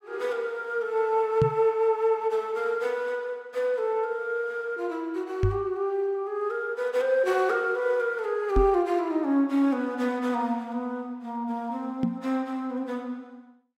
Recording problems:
microphone bump; 4 times, first at 1.5 s; peak +5 dB vs average level

